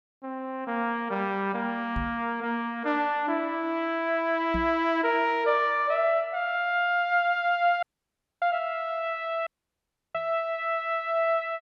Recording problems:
microphone thump; at 2 s, at 4.5 s and at 10 s; peak -3 dB vs average level
audio cutting out; at 8 s for 0.5 s and at 9.5 s for 0.5 s

